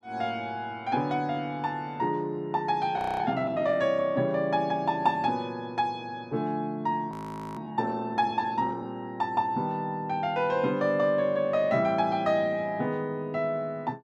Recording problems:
frozen audio; at 3 s and at 7 s

